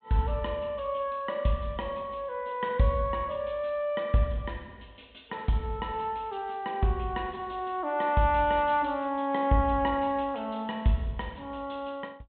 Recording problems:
treble missing; nothing above 4 kHz

